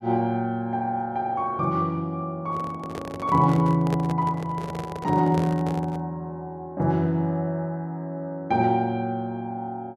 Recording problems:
microphone handling noise; from 2.5 to 6 s; peak -1 dB vs average level

